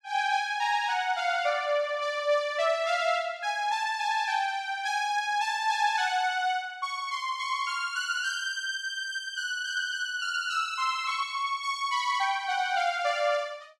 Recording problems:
none

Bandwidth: 15 kHz